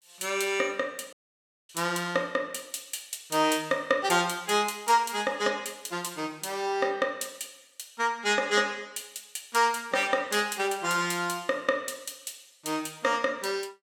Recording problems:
audio cutting out; at 1 s for 0.5 s

